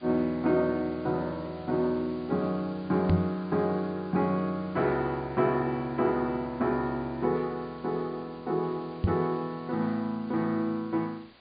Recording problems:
treble cut off; nothing above 4.8 kHz
background hiss; SNR 25 dB
microphone bump; at 3 s and at 9 s; peak +9 dB vs average level

